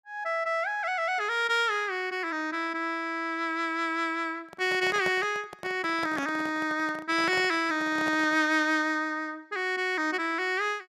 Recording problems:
handling noise; from 4.5 to 8.5 s; peak -4 dB vs average level

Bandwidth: 14 kHz